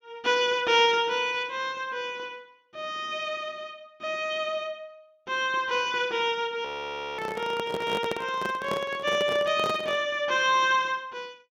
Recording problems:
frozen audio; at 6.5 s for 0.5 s
microphone handling noise; from 7 to 10 s; peak -1 dB vs average level

